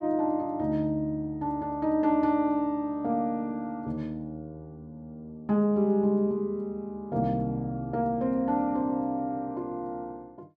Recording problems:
none

